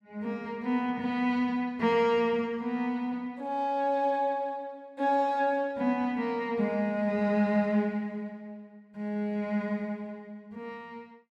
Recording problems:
none

